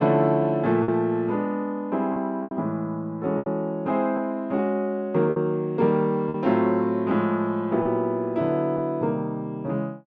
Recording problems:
lost packets; 4% of the sound replaced, filled with repeated pitch periods

